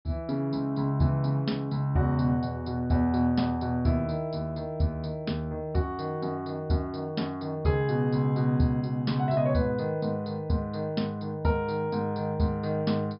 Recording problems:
treble missing; nothing above 5.5 kHz

